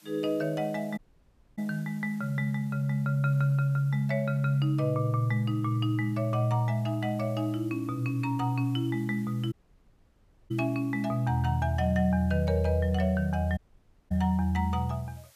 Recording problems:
background hiss; slope +1 dB per octave, SNR 29 dB
dropout; at 1 s for 0.5 s, at 9.5 s for 1 s and at 14 s for 0.5 s

